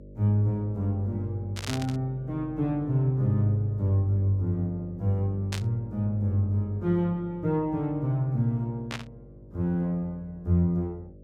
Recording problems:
electrical hum; 50 Hz, harmonics up to 600 Hz, SNR 19 dB
static burst; at 1.5 s, at 5.5 s and at 9 s; peak -3 dB vs average level

